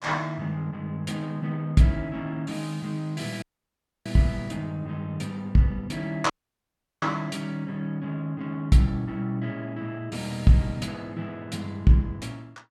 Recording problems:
audio cutting out; at 3.5 s for 0.5 s and at 6.5 s for 0.5 s

